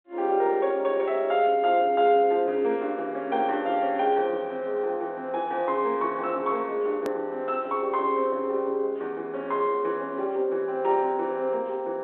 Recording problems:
phone line; 260 Hz to 4 kHz, G.726
click at an edit; at 7 s

